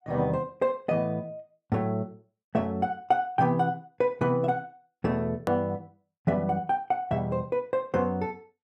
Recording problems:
hard cut with a click; at 5.5 s

